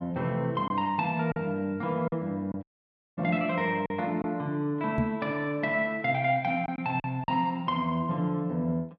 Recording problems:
lost packets; 4% of the sound replaced, filled with silence
audio cutting out; at 2.5 s for 0.5 s
knock on the microphone; at 5 s; peak +3 dB vs average level

